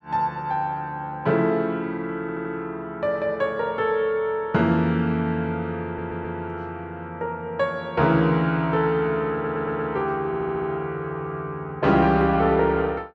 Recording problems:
audio stuttering; 4 times, first at 2 s

